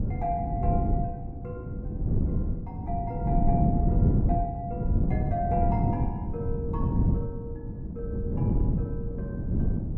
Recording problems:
wind noise; below 190 Hz, SNR -7 dB

